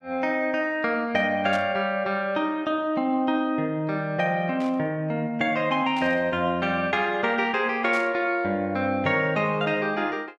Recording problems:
burst of static; 4 times, first at 1.5 s; peak -11 dB vs average level

